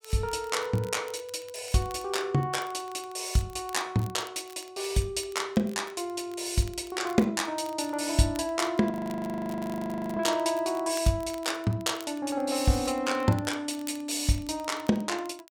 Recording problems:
crackle; vinyl, SNR 21 dB
audio freezing; at 9 s for 1.5 s

